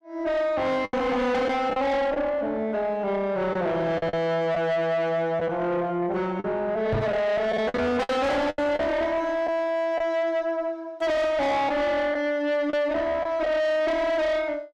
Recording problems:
distorted audio; soft clipping, signal-to-distortion ratio 6 dB
packet loss; 5% of the sound replaced, filled with the last packet
microphone bump; at 7 s; peak +3 dB vs average level

